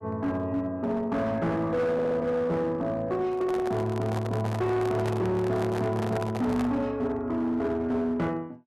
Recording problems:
distortion; hard clipping, signal-to-distortion ratio 12 dB
stutter; at 2 s
microphone handling noise; from 3.5 to 6.5 s; peak -2 dB vs average level

